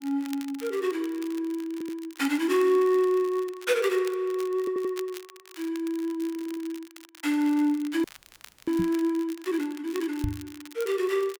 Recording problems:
crackle; vinyl, SNR 19 dB
audio stuttering; at 1.5 s, at 4.5 s and at 6.5 s
audio freezing; at 8 s for 0.5 s
knock on the microphone; at 9 s and at 10 s; peak +1 dB vs average level

